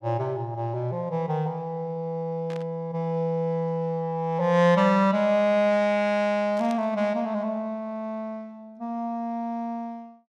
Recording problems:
static burst; at 2.5 s and at 6.5 s; peak -13 dB vs average level

